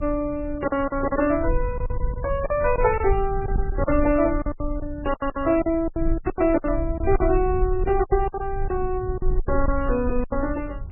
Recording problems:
lossy codec; MP3, log-spectral distance 2 dB, nothing above 2.4 kHz
rumble; below 60 Hz, SNR 7 dB
lost packets; 14% of the sound replaced, filled with silence

